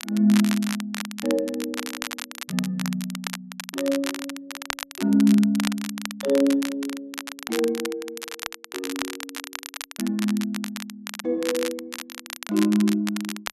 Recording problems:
crackling; vinyl, SNR 9 dB

